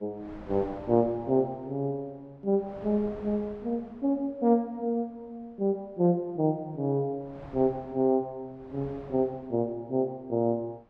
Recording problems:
wind on the microphone; below 840 Hz, SNR 20 dB

